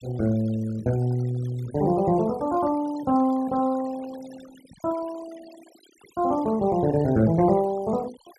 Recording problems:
noise reduction artefacts; signal-to-artefact ratio 21 dB

